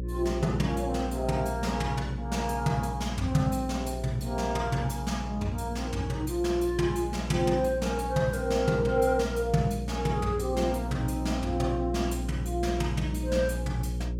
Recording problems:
hum; 60 Hz, harmonics up to 540 Hz, SNR 6 dB

